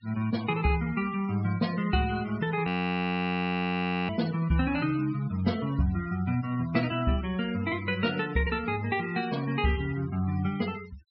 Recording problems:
low-pass filter; nothing above 5.6 kHz
denoising artefacts; signal-to-artefact ratio 17 dB
frozen audio; at 2.5 s for 1.5 s

